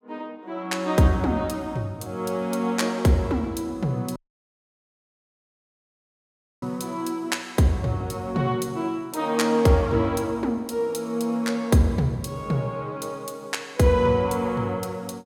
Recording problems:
dropout; at 4 s for 2.5 s

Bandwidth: 17 kHz